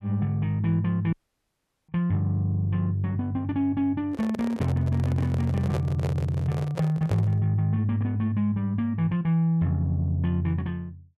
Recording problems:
dropout; at 1 s for 1 s
microphone handling noise; from 4 to 7.5 s; peak -2 dB vs average level

